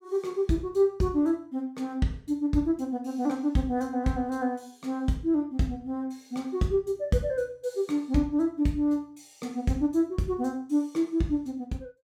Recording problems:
none

